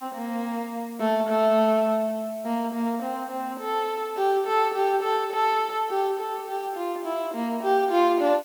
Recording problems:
hiss; slope +2 dB per octave, SNR 23 dB

